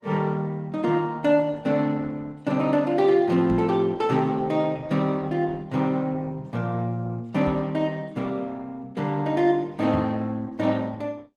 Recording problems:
codec artefacts; Opus, log-spectral distance 2 dB
knock on the microphone; at 3.5 s, at 7.5 s and at 10 s; peak 0 dB vs average level

